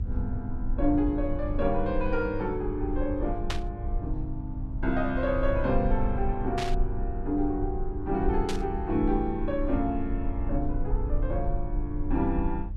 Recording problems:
hum; 50 Hz, harmonics up to 500 Hz, SNR 13 dB
rumble; below 50 Hz, SNR 4 dB
burst of static; at 3.5 s, at 6.5 s and at 8.5 s; peak +1 dB vs average level

